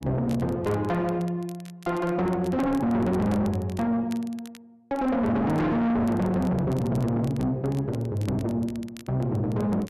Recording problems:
distorted audio; soft clipping, signal-to-distortion ratio 6 dB
crackle; vinyl, SNR 24 dB

